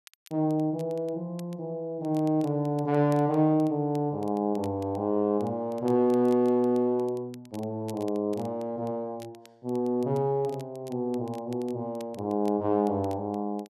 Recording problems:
crackling; vinyl, SNR 28 dB

